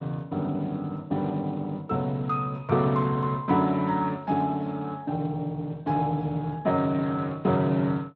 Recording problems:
lossy codec; Speex, log-spectral distance 2 dB

